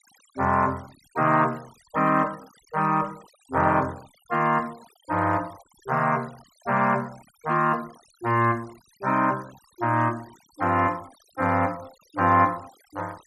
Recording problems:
denoising artefacts; signal-to-artefact ratio 25 dB

